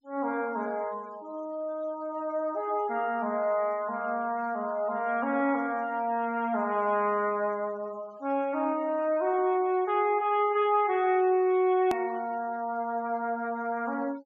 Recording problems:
low-pass filter; nothing above 8 kHz
noise reduction artefacts; signal-to-artefact ratio 25 dB
click at an edit; at 12 s

